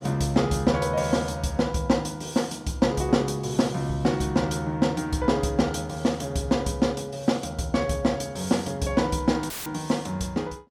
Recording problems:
dropout; at 9.5 s; filled with static

